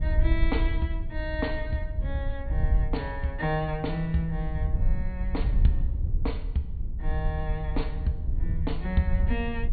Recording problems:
low-pass filter; nothing above 4.5 kHz
wind noise; below 70 Hz, SNR -2 dB

